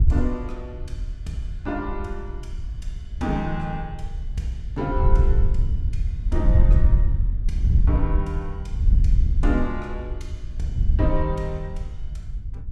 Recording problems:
wind on the microphone; below 72 Hz, SNR -5 dB

